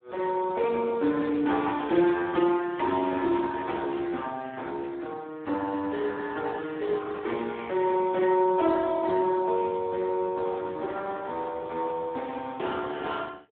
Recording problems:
telephone audio; 240 Hz to 2.3 kHz, Speex

